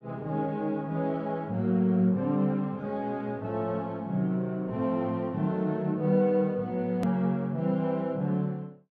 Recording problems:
hard cut with a click; at 7 s

